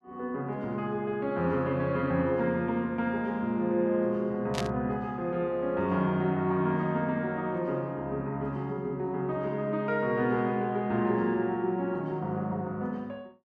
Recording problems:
burst of static; at 4.5 s; peak -1 dB vs average level

